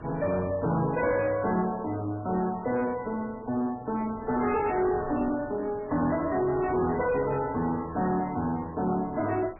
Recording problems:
lossy compression; MP3, log-spectral distance 4 dB, nothing above 2.2 kHz
distorted audio; soft clipping, signal-to-distortion ratio 10 dB
wind noise; below 900 Hz, SNR 17 dB
crackle; from 1 to 3 s, from 4 to 6.5 s and from 6.5 to 9 s; loose cable, SNR 25 dB

